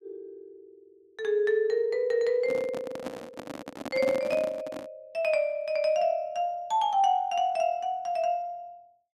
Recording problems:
microphone handling noise; from 2.5 to 5 s; peak -2 dB vs average level

